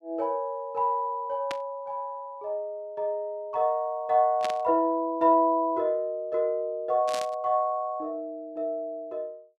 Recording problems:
static burst; at 1.5 s, at 4.5 s and at 7 s; peak -4 dB vs average level

